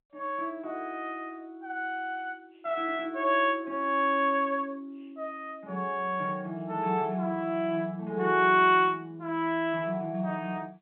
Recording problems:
phone line; 150 Hz to 3.5 kHz, G.711

